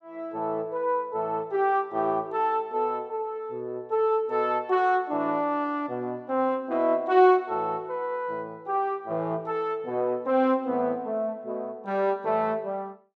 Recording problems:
none

